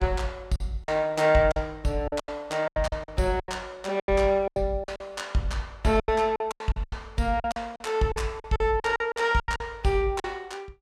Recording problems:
lost packets; 15% of the sound replaced, filled with silence

